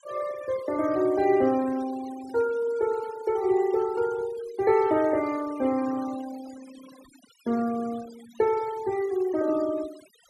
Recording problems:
noise reduction artefacts; signal-to-artefact ratio 20 dB

